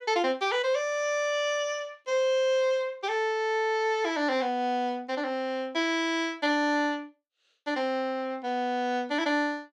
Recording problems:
none

